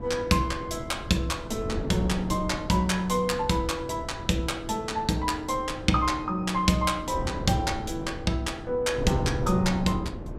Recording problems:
wind on the microphone; below 320 Hz, SNR 9 dB

